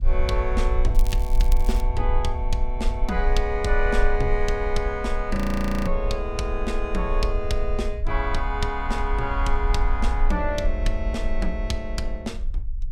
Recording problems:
rumble; below 46 Hz, strongest tone 24 Hz, SNR 0 dB
crackling; at 1 s; loose cable, SNR 15 dB
audio freezing; at 5.5 s for 0.5 s

